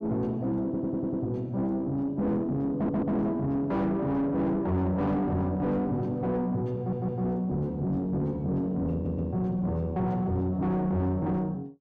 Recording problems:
distortion; soft clipping, signal-to-distortion ratio 7 dB
audio stuttering; 4 times, first at 0.5 s

